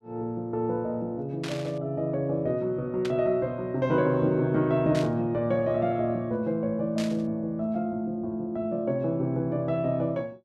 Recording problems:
static burst; 4 times, first at 1.5 s; peak -6 dB vs average level

